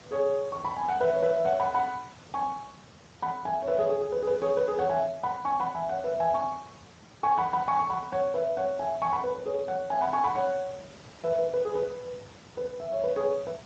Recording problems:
codec artefacts; Speex, log-spectral distance 4 dB
hiss; slope -4 dB per octave, SNR 21 dB

